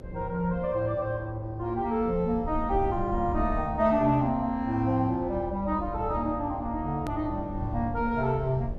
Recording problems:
electrical hum; 50 Hz, harmonics up to 600 Hz, SNR 19 dB
rumble; below 82 Hz, SNR 12 dB
hard cut with a click; at 7 s

